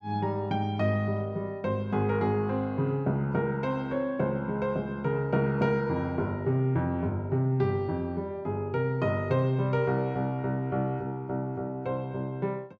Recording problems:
none

